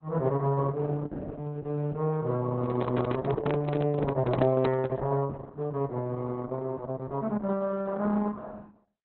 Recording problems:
codec artefacts; Opus, log-spectral distance 3 dB
handling noise; from 2.5 to 5 s; peak +7 dB vs average level

